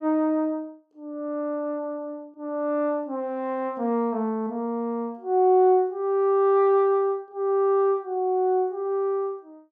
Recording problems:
none

